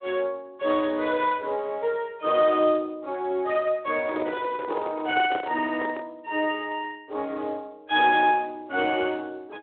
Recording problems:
phone line; 260 Hz to 3.7 kHz, Speex
handling noise; from 4 to 6 s; peak -3 dB vs average level

